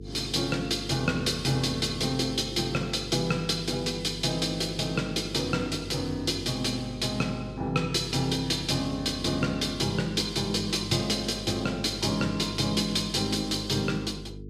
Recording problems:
electrical hum; 50 Hz, harmonics up to 450 Hz, SNR 13 dB

